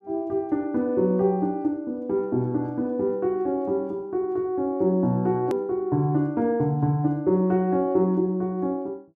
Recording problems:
hard cut with a click; at 5.5 s

